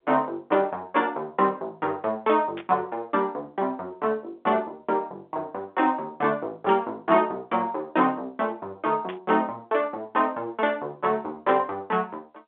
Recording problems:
telephone audio; 280 Hz to 3.7 kHz, G.711
static burst; at 2.5 s and at 9 s; peak -8 dB vs average level

